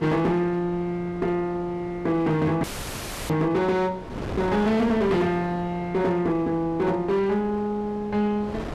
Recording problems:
distortion; hard clipping, signal-to-distortion ratio 10 dB
wind on the microphone; below 700 Hz, SNR 14 dB
audio cutting out; at 2.5 s for 0.5 s

